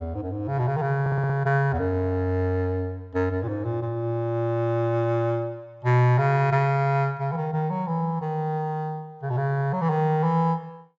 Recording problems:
treble missing; nothing above 8 kHz
stutter; at 1 s

